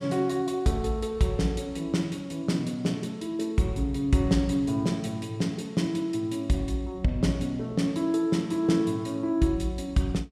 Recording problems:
none

